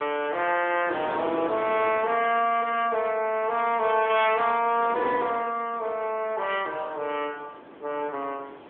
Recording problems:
telephone audio; 260 Hz to 3.5 kHz, AMR-NB
wind on the microphone; below 1 kHz, SNR 15 dB

